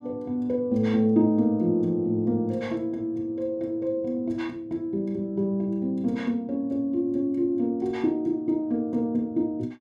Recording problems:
none

